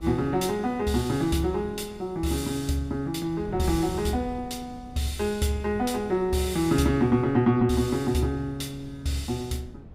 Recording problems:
wind on the microphone; below 200 Hz, SNR 18 dB

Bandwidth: 15.5 kHz